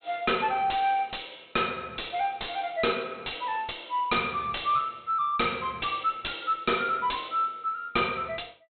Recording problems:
treble cut off; nothing above 4 kHz
distorted audio; soft clipping, signal-to-distortion ratio 6 dB

